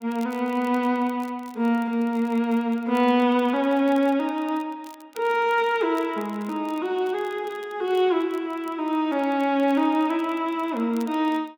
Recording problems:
crackling; vinyl, SNR 28 dB

